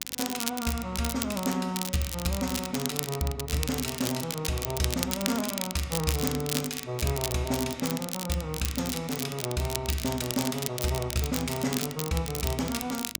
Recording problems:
electrical hum; 50 Hz, harmonics up to 1 kHz, SNR 24 dB
crackling; vinyl, SNR 3 dB

